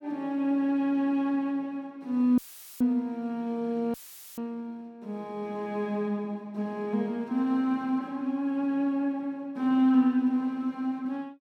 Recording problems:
dropout; at 2.5 s and at 4 s; filled with static

